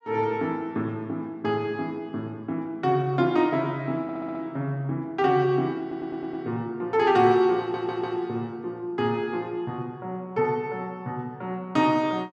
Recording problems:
audio stuttering; at 4 s, at 6 s and at 7.5 s

